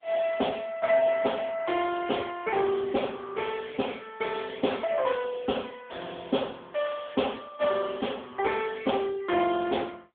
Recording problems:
phone line; 260 Hz to 3.5 kHz, AMR-NB

